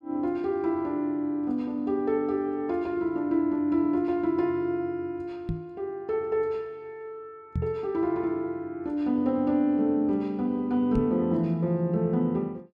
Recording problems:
microphone thump; at 5.5 s, at 7.5 s and at 11 s; peak +2 dB vs average level

